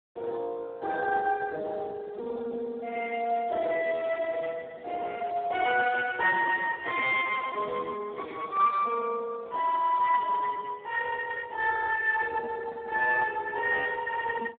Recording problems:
telephone audio; 340 Hz to 2.6 kHz, Speex

